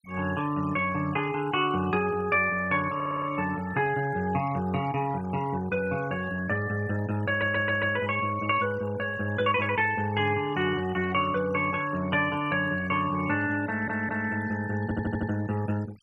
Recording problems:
denoising artefacts; signal-to-artefact ratio 19 dB
stutter; 4 times, first at 3 s

